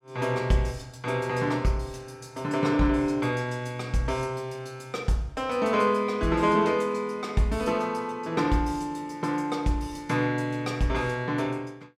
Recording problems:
none

